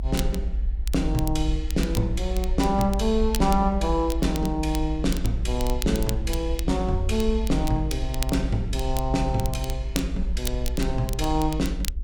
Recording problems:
hum; 50 Hz, harmonics up to 450 Hz, SNR 20 dB
rumble; below 54 Hz, SNR 3 dB
crackle; vinyl, SNR 12 dB

